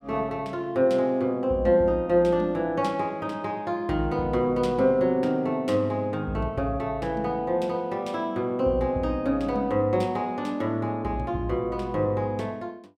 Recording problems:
none

